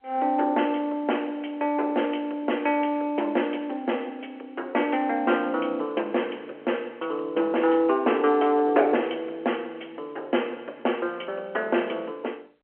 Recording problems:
phone line; 300 Hz to 3.2 kHz, G.711

